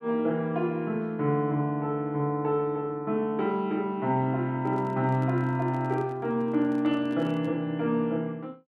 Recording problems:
microphone handling noise; from 4.5 to 7.5 s; peak -11 dB vs average level

